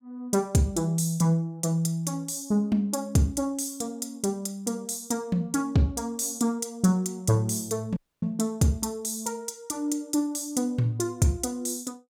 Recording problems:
dropout; at 8 s

